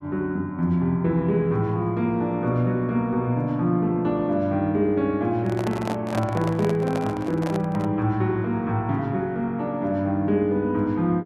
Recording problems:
handling noise; from 5.5 to 8 s; peak -2 dB vs average level

